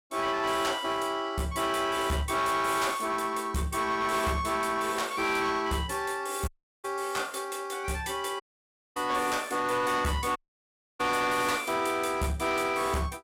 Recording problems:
distorted audio; hard clipping, uneven, signal-to-distortion ratio 10 dB
audio cutting out; at 6.5 s, at 8.5 s for 0.5 s and at 10 s for 0.5 s

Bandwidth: 16.5 kHz